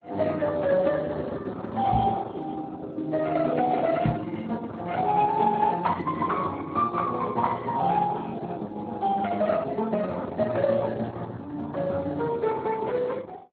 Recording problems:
lossy compression; Opus, then Speex, log-spectral distance 3 dB
microphone bump; at 2 s and at 4 s; peak +6 dB vs average level

